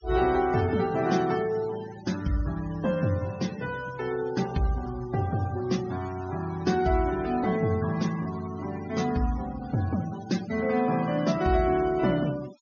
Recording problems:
treble missing; nothing above 6.7 kHz
noise reduction artefacts; signal-to-artefact ratio 17 dB

